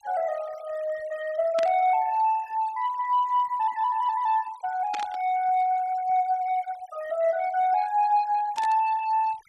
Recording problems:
denoising artefacts; signal-to-artefact ratio 21 dB
static burst; at 1.5 s, at 5 s and at 8.5 s; peak -7 dB vs average level

